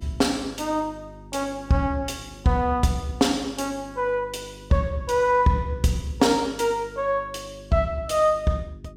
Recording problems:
hum; 50 Hz, harmonics up to 400 Hz, SNR 21 dB

